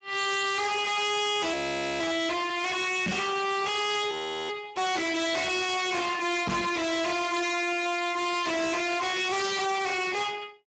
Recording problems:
codec artefacts; Speex, log-spectral distance 7 dB, nothing above 7.8 kHz
distortion; hard clipping, signal-to-distortion ratio 6 dB
audio freezing; at 1.5 s and at 4 s
microphone thump; at 3 s and at 6.5 s; peak +2 dB vs average level

